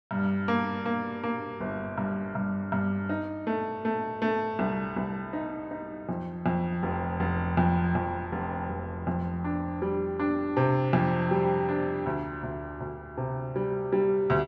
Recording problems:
none

